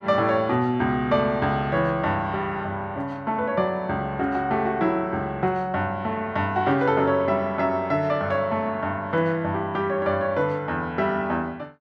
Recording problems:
none

